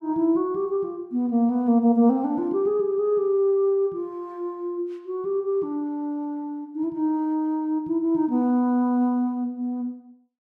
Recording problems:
none

